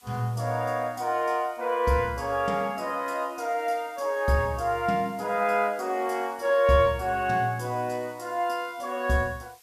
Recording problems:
hiss; slope +2 dB per octave, SNR 28 dB

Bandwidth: 14.5 kHz